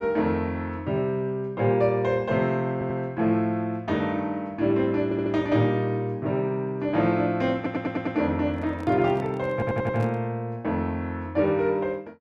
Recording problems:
audio stuttering; 4 times, first at 2.5 s
microphone handling noise; from 8.5 to 10 s; peak -9 dB vs average level

